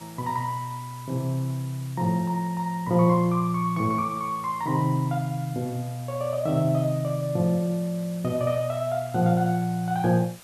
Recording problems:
background hiss; slope -1 dB per octave, SNR 21 dB

